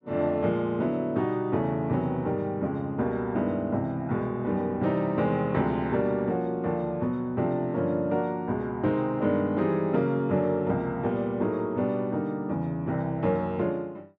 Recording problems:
none

